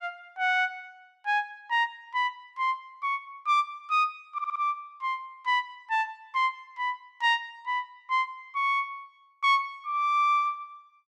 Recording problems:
audio stuttering; at 4.5 s

